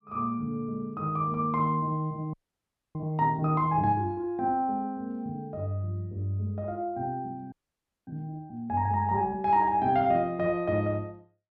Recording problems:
audio freezing; at 2.5 s for 0.5 s and at 7.5 s for 0.5 s

